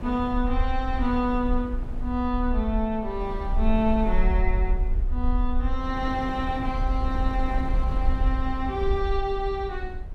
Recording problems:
low-frequency rumble; below 52 Hz, SNR 2 dB
wind on the microphone; below 350 Hz, SNR 11 dB

